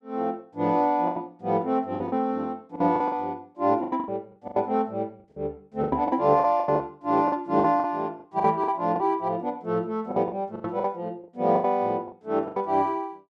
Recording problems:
packet loss; 12% of the sound replaced, filled with the last packet

